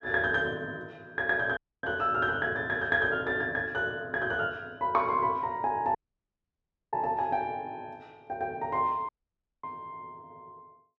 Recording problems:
audio cutting out; at 1.5 s, at 6 s for 1 s and at 9 s for 0.5 s

